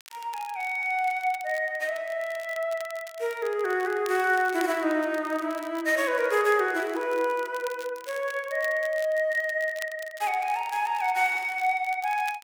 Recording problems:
crackle; vinyl, SNR 20 dB

